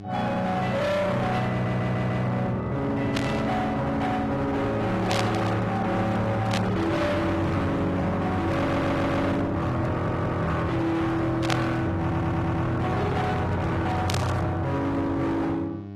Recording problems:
lossy codec; AAC, log-spectral distance 2 dB, nothing above 13.1 kHz
distortion; hard clipping, signal-to-distortion ratio 6 dB
electrical hum; 50 Hz, harmonics up to 800 Hz, SNR 14 dB
stutter; 4 times, first at 1.5 s
burst of static; 5 times, first at 3 s; peak +1 dB vs average level

